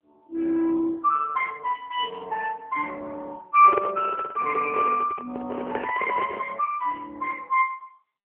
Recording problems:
phone line; 300 Hz to 3.5 kHz, AMR-NB
handling noise; from 3.5 to 6.5 s; peak +1 dB vs average level

